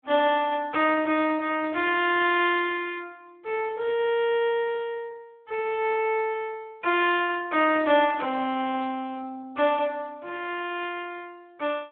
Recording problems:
telephone audio; 280 Hz to 3.5 kHz, Speex

